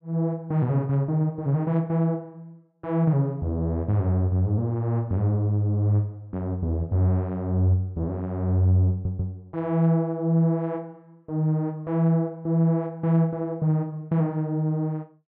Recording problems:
stutter; at 9 s

